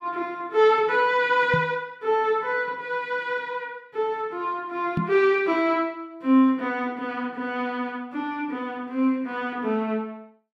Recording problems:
knock on the microphone; at 1.5 s and at 5 s; peak +2 dB vs average level

